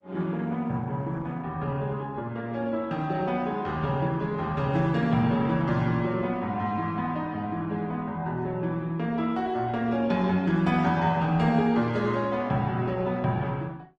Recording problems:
codec artefacts; Opus, log-spectral distance 2 dB

